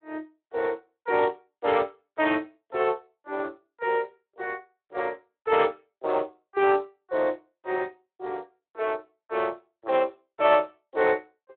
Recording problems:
phone line; 280 Hz to 3.7 kHz, Speex

